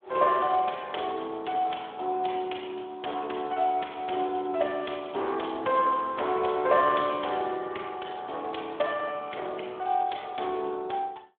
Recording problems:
telephone audio; 260 Hz to 3.5 kHz, Speex

